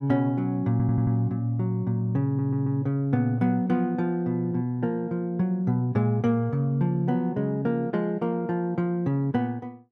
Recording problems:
audio stuttering; at 0.5 s and at 2.5 s

